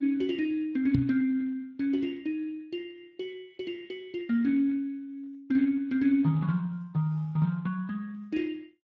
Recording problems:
lossy compression; Speex, log-spectral distance 2 dB
microphone thump; at 1 s; peak +5 dB vs average level

